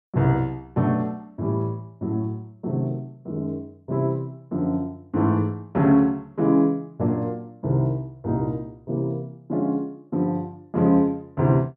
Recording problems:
none

